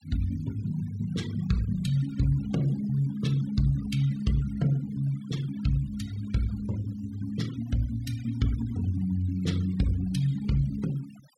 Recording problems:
noise reduction artefacts; signal-to-artefact ratio 19 dB

